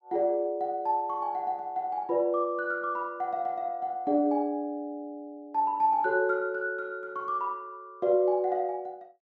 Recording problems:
none

